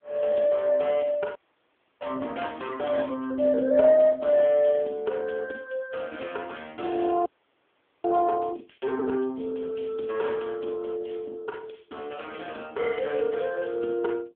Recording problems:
phone line; 220 Hz to 3.4 kHz, AMR-NB
audio freezing; at 1.5 s for 0.5 s and at 7.5 s for 1 s

